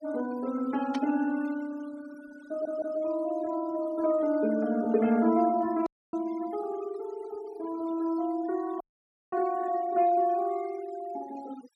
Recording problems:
noise reduction artefacts; signal-to-artefact ratio 20 dB
static burst; at 1 s and at 6 s; peak -7 dB vs average level
stutter; at 2.5 s
dropout; at 6 s and at 9 s for 0.5 s

